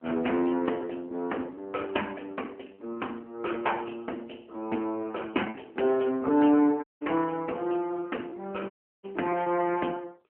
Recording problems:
telephone audio; 220 Hz to 3.1 kHz, AMR-NB
lost packets; 4% of the sound replaced, filled with repeated pitch periods
audio cutting out; at 7 s and at 8.5 s

